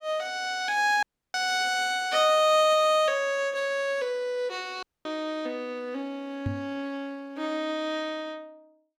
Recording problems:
dropout; at 1 s and at 5 s
microphone thump; at 6.5 s; peak 0 dB vs average level

